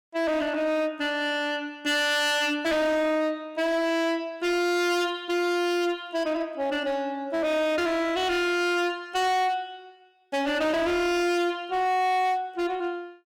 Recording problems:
distortion; hard clipping, uneven, signal-to-distortion ratio 7 dB

